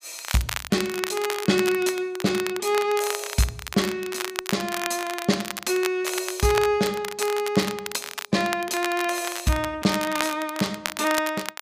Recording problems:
crackling; vinyl, SNR 7 dB

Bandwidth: 15 kHz